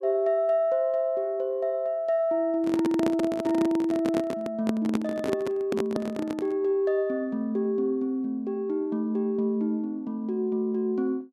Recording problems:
handling noise; from 2.5 to 6.5 s; peak +2 dB vs average level

